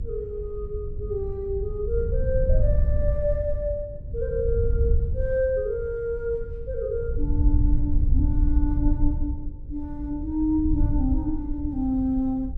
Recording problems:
mains hum; 50 Hz, harmonics up to 550 Hz, SNR 20 dB
wind noise; below 74 Hz, SNR 0 dB

